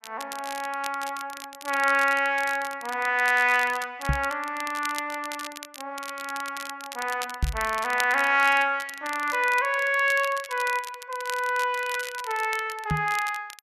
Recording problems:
crackling; vinyl, SNR 14 dB
knock on the microphone; at 4 s, at 7.5 s and at 13 s; peak +3 dB vs average level

